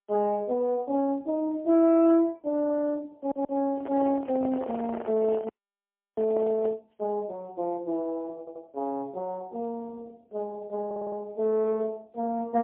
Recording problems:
telephone audio; 240 Hz to 2 kHz, AMR-NB, then MP3
distortion; soft clipping, signal-to-distortion ratio 12 dB
stutter; at 3 s, at 8.5 s and at 11 s
microphone handling noise; from 3.5 to 7 s; peak -5 dB vs average level
frozen audio; at 5.5 s for 0.5 s

